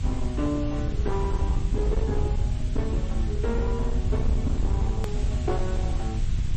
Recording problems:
lossy compression; MP3, log-spectral distance 2 dB
distortion; hard clipping, signal-to-distortion ratio 11 dB
background hiss; slope -1 dB per octave, SNR 14 dB
low-frequency rumble; below 86 Hz, SNR -4 dB
click at an edit; at 5 s

